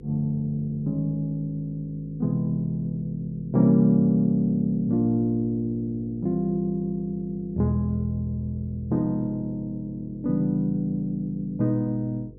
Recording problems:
hum; 50 Hz, harmonics up to 500 Hz, SNR 20 dB

